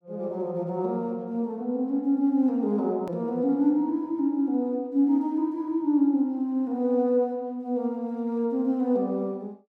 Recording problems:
edit click; at 3 s

